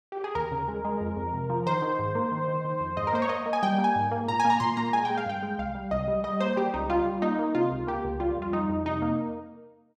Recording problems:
none

